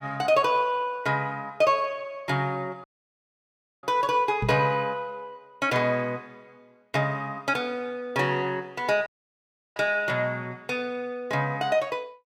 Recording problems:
audio cutting out; at 3 s for 1 s and at 9 s for 0.5 s
microphone thump; at 4.5 s; peak +1 dB vs average level

